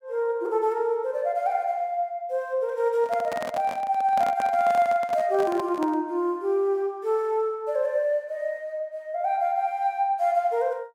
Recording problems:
handling noise; from 3 to 6 s; peak -4 dB vs average level

